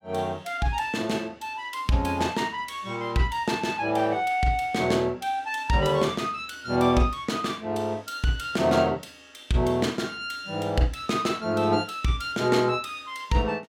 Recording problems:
none

